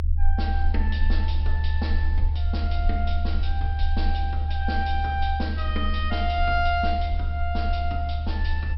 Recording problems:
treble cut off; nothing above 5.5 kHz
low-frequency rumble; below 76 Hz, SNR -3 dB

